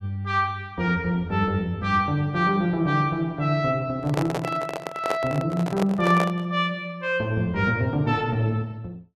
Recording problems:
microphone handling noise; from 4 to 6.5 s; peak +1 dB vs average level

